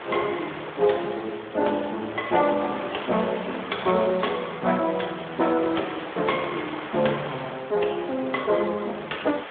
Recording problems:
phone line; 240 Hz to 3.5 kHz, Speex
hiss; SNR 11 dB

